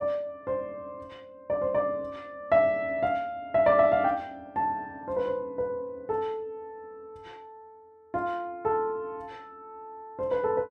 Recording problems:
none

